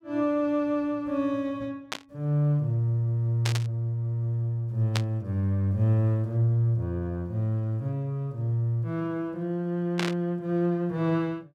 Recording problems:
burst of static; 4 times, first at 2 s; peak +1 dB vs average level

